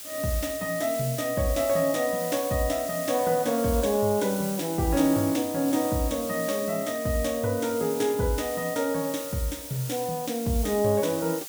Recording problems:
hiss; slope +2 dB per octave, SNR 9 dB

